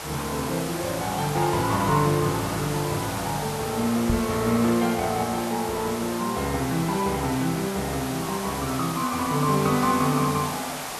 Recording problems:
hiss; SNR 7 dB
microphone bump; at 4 s; peak +3 dB vs average level

